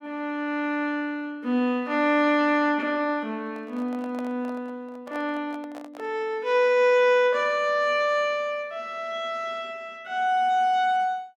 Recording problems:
microphone handling noise; from 3.5 to 6 s; peak -11 dB vs average level

